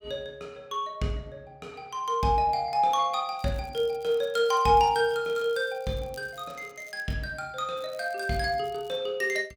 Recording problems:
crackling; from 3.5 to 7 s and from 8 to 9 s; loose cable, SNR 27 dB

